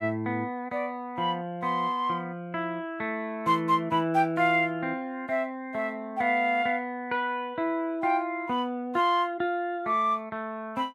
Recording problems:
none

